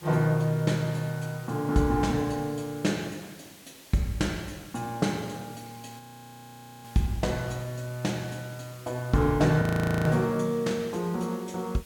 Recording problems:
background hiss; slope -1 dB per octave, SNR 21 dB
audio freezing; at 6 s for 1 s and at 9.5 s

